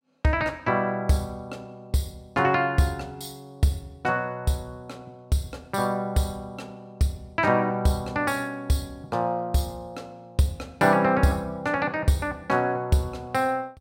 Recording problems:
none

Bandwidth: 16 kHz